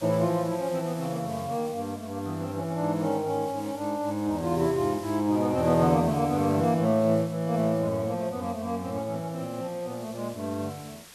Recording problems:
background hiss; slope 0 dB per octave, SNR 20 dB

